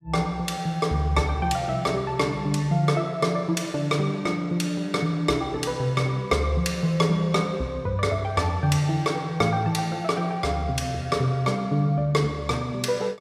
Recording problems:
none

